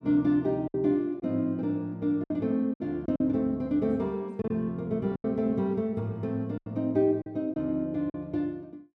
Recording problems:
lost packets; 6% of the sound replaced, filled with silence

